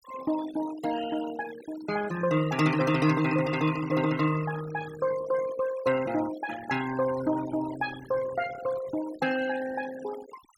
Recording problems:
denoising artefacts; signal-to-artefact ratio 14 dB

